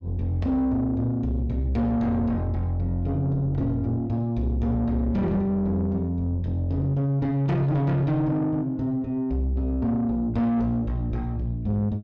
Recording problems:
distorted audio; soft clipping, signal-to-distortion ratio 12 dB

